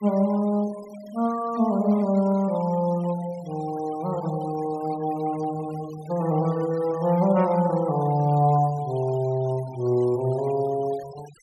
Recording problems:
denoising artefacts; signal-to-artefact ratio 22 dB

